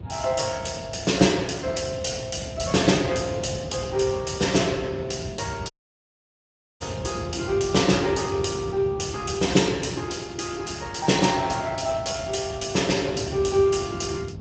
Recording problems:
lossy codec; Speex, log-spectral distance 7 dB, nothing above 7.6 kHz
low-frequency rumble; below 200 Hz, SNR 12 dB
audio cutting out; at 5.5 s for 1 s

